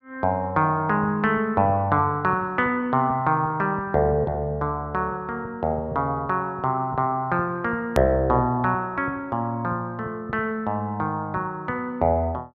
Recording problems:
hard cut with a click; at 8 s

